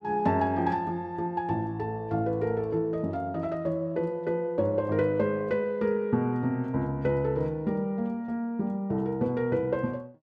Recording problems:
none

